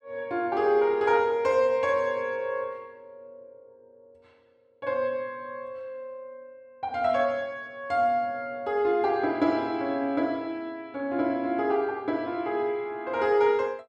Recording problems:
none

